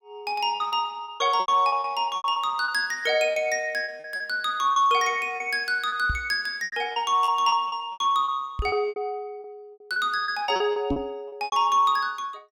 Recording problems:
lost packets; 14% of the sound replaced, filled with repeated pitch periods
microphone bump; at 6 s, at 8.5 s and at 11 s; peak +1 dB vs average level

